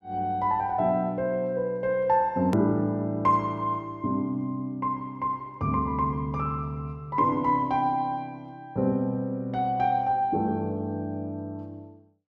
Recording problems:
edit click; at 2.5 s

